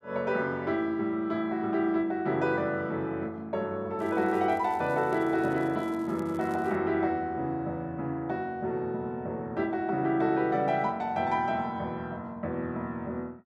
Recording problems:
crackle; from 4 to 7 s; loose cable, SNR 28 dB

